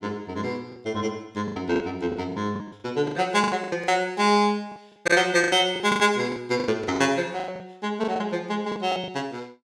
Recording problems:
lost packets; 16% of the sound replaced, filled with the last packet

